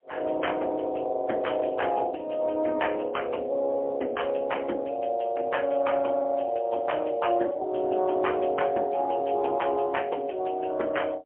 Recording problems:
phone line; 240 Hz to 3.2 kHz, AMR-NB, then MP3

